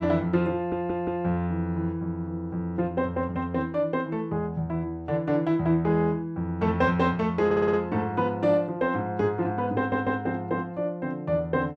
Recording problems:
audio stuttering; at 0.5 s, at 7.5 s and at 10 s

